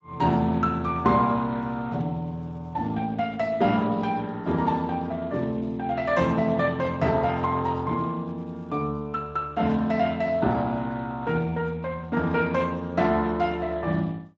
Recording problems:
lossy codec; Speex, log-spectral distance 3 dB, nothing above 7.3 kHz

